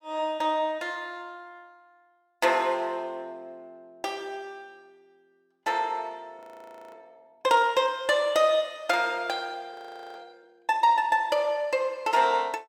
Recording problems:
frozen audio; at 6.5 s for 0.5 s and at 9.5 s

